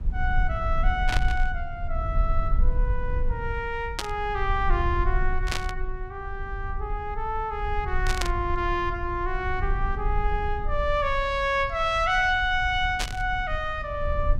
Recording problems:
low-frequency rumble; below 54 Hz, strongest tone 22 Hz, SNR 4 dB
static burst; 5 times, first at 1 s; peak +3 dB vs average level

